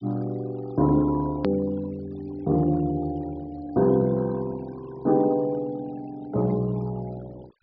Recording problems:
treble missing; nothing above 5.5 kHz
noise reduction artefacts; signal-to-artefact ratio 23 dB
hard cut with a click; at 1.5 s

